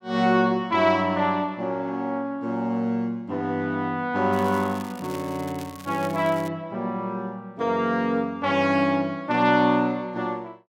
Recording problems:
crackling; from 4.5 to 6.5 s; loose cable, SNR 20 dB

